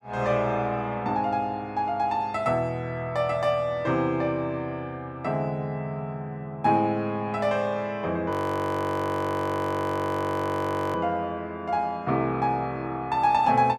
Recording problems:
frozen audio; at 8.5 s for 2.5 s

